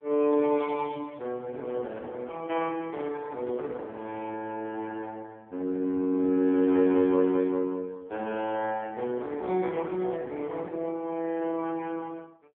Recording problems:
telephone audio; 130 Hz to 3 kHz, AMR-NB

